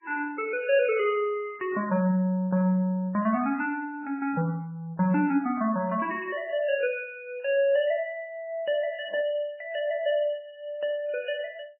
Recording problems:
codec artefacts; MP3, log-spectral distance 2 dB, nothing above 2.4 kHz

